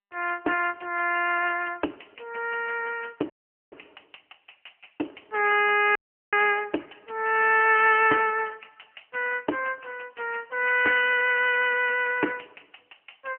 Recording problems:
telephone audio; 280 Hz to 3 kHz, AMR-NB
dropout; at 3.5 s and at 6 s

